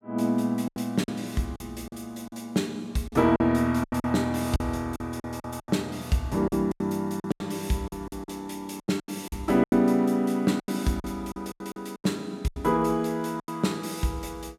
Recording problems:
lost packets; 13% of the sound replaced, filled with silence

